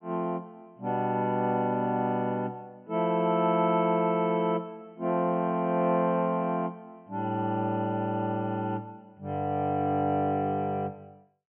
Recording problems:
treble cut off; nothing above 3.1 kHz

